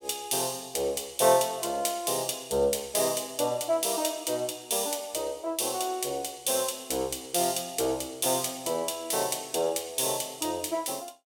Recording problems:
none

